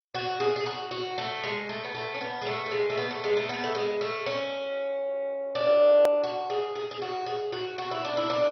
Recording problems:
codec artefacts; MP2, log-spectral distance 4 dB
hard cut with a click; at 6 s

